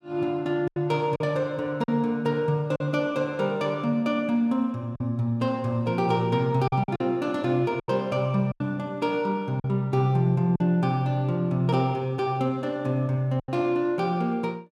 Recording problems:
lost packets; 5% of the sound replaced, filled with silence

